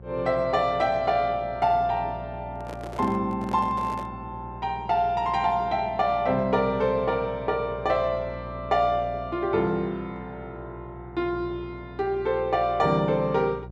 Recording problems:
electrical hum; 60 Hz, harmonics up to 720 Hz, SNR 16 dB
handling noise; from 2.5 to 4 s; peak -8 dB vs average level

